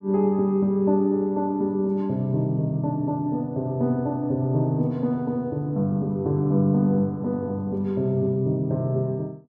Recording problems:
none

